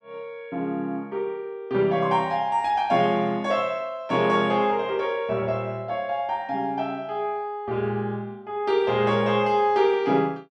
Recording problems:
none

